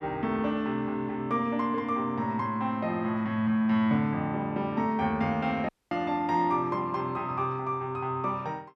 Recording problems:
dropout; at 5.5 s

